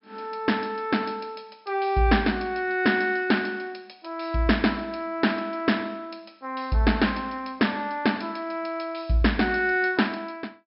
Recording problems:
low-pass filter; nothing above 5.4 kHz

